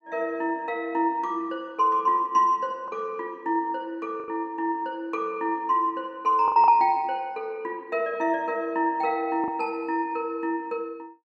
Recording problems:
packet loss; 3% of the sound replaced, filled with the last packet

